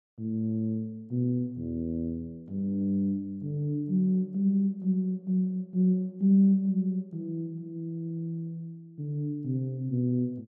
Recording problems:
none

